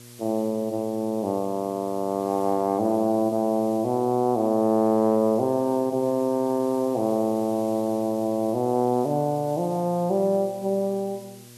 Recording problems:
hum; 60 Hz, harmonics up to 1.1 kHz, SNR 25 dB
background hiss; slope +2 dB per octave, SNR 24 dB

